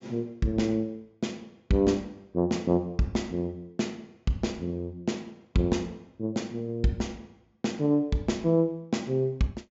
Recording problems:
treble missing; nothing above 7.6 kHz

